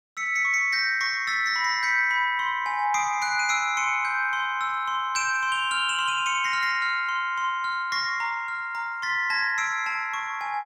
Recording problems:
none

